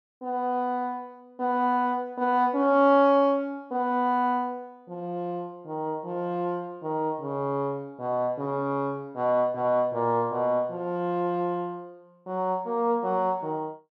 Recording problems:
none

